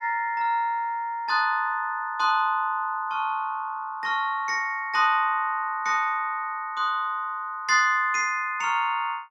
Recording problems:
none

